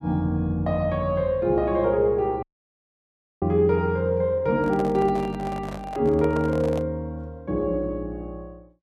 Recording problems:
dropout; at 2.5 s for 1 s
microphone handling noise; from 4.5 to 7 s; peak -7 dB vs average level

